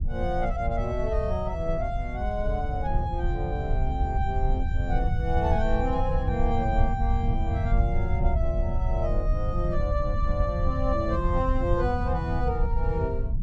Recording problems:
low-frequency rumble; below 82 Hz, SNR -1 dB

